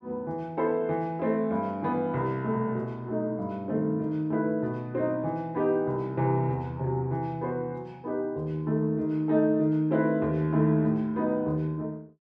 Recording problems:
none

